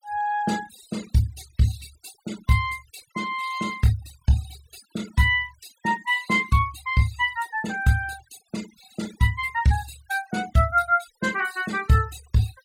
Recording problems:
noise reduction artefacts; signal-to-artefact ratio 18 dB

